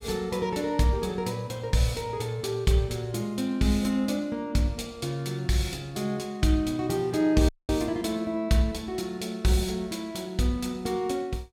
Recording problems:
audio cutting out; at 7.5 s

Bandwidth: 17 kHz